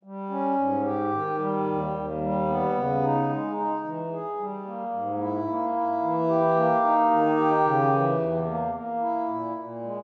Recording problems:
none

